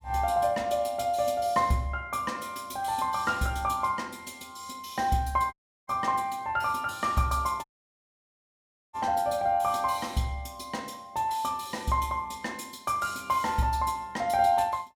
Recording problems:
audio cutting out; at 5.5 s and at 7.5 s for 1.5 s

